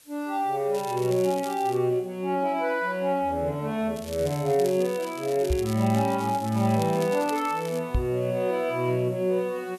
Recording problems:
background hiss; slope +1 dB per octave, SNR 28 dB
crackle; from 0.5 to 2 s and from 4 to 8 s; loose cable, SNR 16 dB
microphone thump; at 5.5 s and at 8 s; peak +3 dB vs average level

